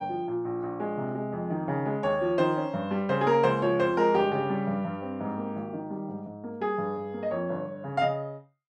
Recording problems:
none

